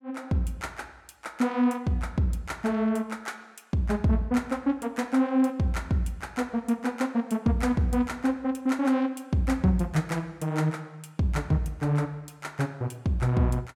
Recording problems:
none

